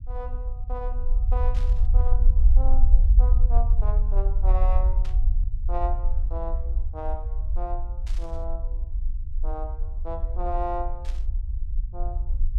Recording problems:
rumble; below 52 Hz, SNR -10 dB
static burst; 4 times, first at 1.5 s; peak -6 dB vs average level

